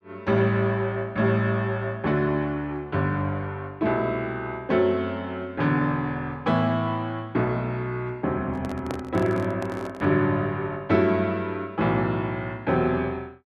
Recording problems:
handling noise; from 8.5 to 10 s; peak -4 dB vs average level

